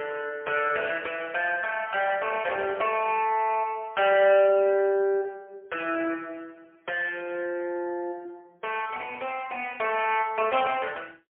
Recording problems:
phone line; 280 Hz to 3.1 kHz, AMR-NB, then MP3

